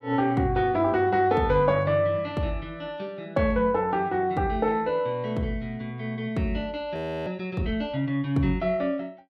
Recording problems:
audio freezing; at 7 s

